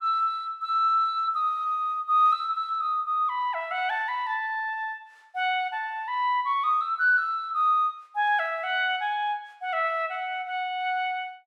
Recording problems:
none

